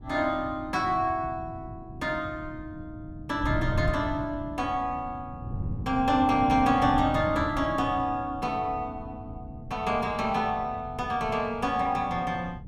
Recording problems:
wind noise; below 150 Hz, SNR 10 dB

